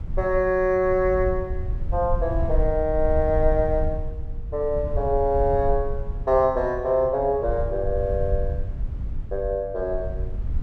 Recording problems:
low-frequency rumble; below 72 Hz, SNR 7 dB

